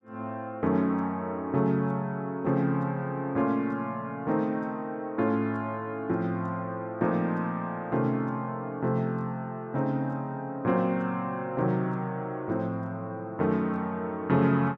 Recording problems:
none

